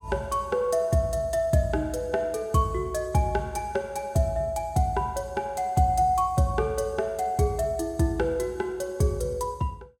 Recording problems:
none

